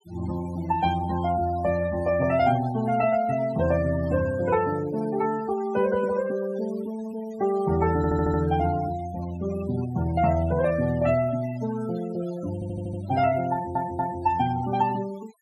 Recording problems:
denoising artefacts; signal-to-artefact ratio 16 dB
audio stuttering; at 8 s, at 13 s and at 14 s

